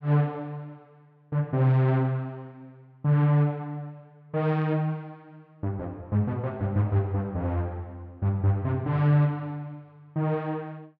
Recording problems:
none

